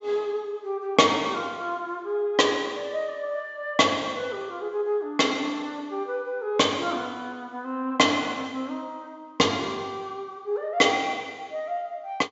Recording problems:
low-pass filter; nothing above 8 kHz

